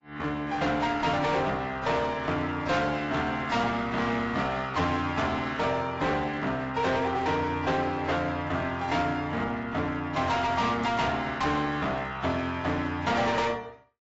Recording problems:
codec artefacts; AAC, log-spectral distance 3 dB, nothing above 7.6 kHz
distortion; hard clipping, uneven, signal-to-distortion ratio 7 dB

